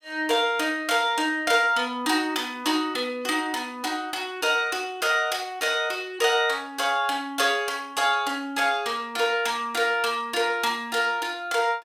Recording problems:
none

